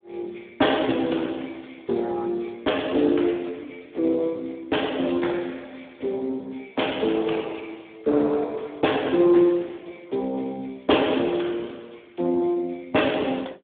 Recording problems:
telephone audio; 280 Hz to 3.6 kHz, Speex

